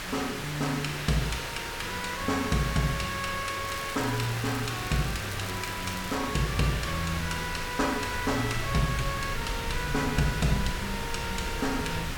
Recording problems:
hiss; SNR 5 dB
rumble; below 100 Hz, SNR 12 dB
crackle; from 3.5 to 6 s; loose cable, SNR 16 dB

